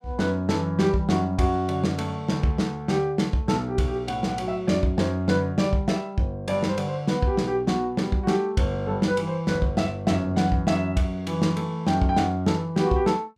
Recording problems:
none

